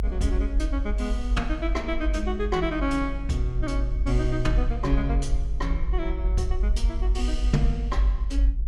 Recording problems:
electrical hum; 60 Hz, harmonics up to 420 Hz, SNR 18 dB
low-frequency rumble; below 52 Hz, strongest tone 46 Hz, SNR -2 dB

